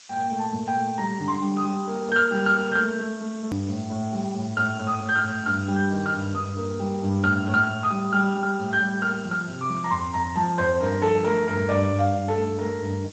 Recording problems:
codec artefacts; Speex, log-spectral distance 10 dB
background hiss; slope +4 dB per octave, SNR 22 dB
edit click; at 3.5 s

